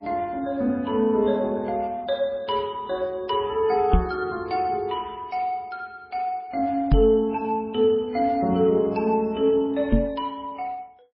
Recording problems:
codec artefacts; AAC, then MP3, log-spectral distance 2 dB, nothing above 4.6 kHz
knock on the microphone; at 4 s, at 7 s and at 10 s; peak +8 dB vs average level

